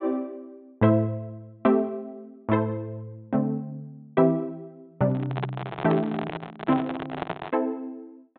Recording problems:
low-pass filter; nothing above 4 kHz
microphone handling noise; from 5 to 7.5 s; peak 0 dB vs average level

